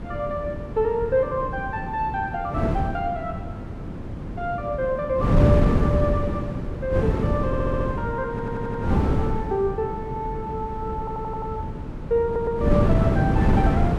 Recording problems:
wind on the microphone; below 270 Hz, SNR -1 dB
stutter; 4 times, first at 7.5 s

